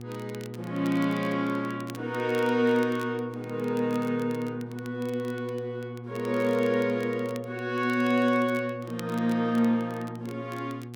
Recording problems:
electrical hum; 60 Hz, harmonics up to 840 Hz, SNR 12 dB
crackling; vinyl, SNR 23 dB

